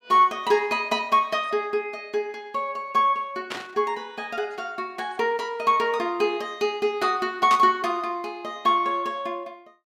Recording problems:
static burst; at 3.5 s and at 7.5 s; peak -3 dB vs average level

